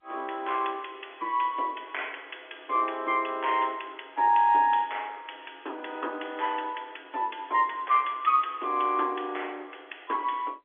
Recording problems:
phone line; 260 Hz to 3.5 kHz, G.711

